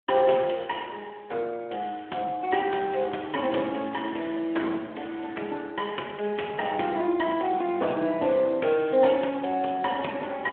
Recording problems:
telephone audio; 240 Hz to 3.3 kHz, Speex

